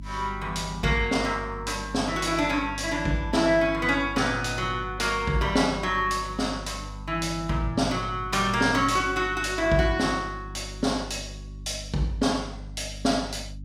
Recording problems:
electrical hum; 50 Hz, harmonics up to 300 Hz, SNR 14 dB

